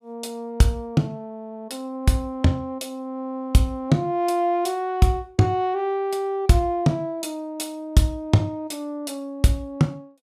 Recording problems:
none

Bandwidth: 14.5 kHz